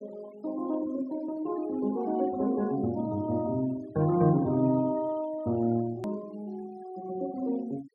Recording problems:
noise reduction artefacts; signal-to-artefact ratio 22 dB
hard cut with a click; at 6 s

